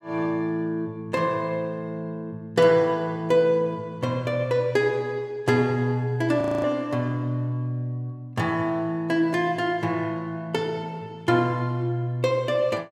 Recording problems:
audio freezing; at 6.5 s

